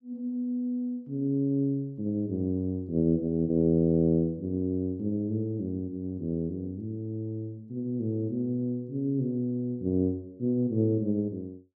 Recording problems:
none

